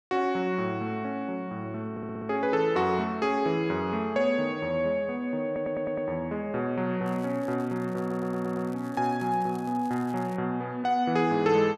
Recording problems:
audio stuttering; at 2 s, at 5.5 s and at 8 s
crackle; from 7 to 10 s; loose cable, SNR 27 dB

